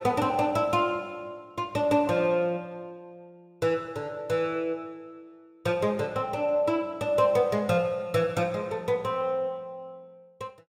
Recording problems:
none

